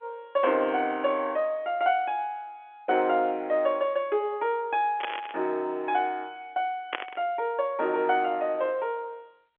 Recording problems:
phone line; 280 Hz to 3.5 kHz, G.711
burst of static; at 5 s and at 7 s; peak +2 dB vs average level

